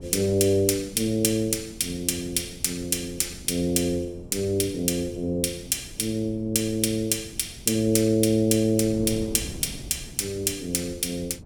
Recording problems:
wind on the microphone; below 260 Hz, SNR 18 dB

